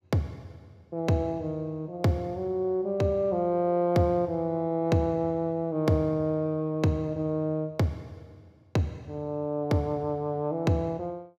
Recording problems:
none

